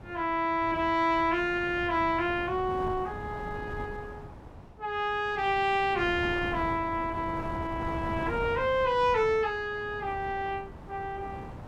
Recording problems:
wind noise; below 590 Hz, SNR 12 dB

